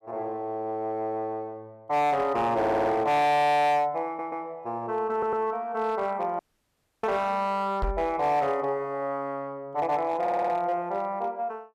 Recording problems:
distorted audio; hard clipping, signal-to-distortion ratio 10 dB
stutter; 4 times, first at 2.5 s
audio cutting out; at 6.5 s for 0.5 s
knock on the microphone; at 8 s; peak 0 dB vs average level

